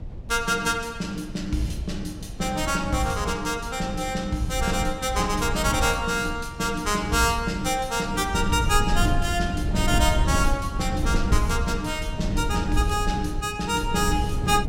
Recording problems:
rumble; below 100 Hz, SNR 6 dB

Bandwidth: 17 kHz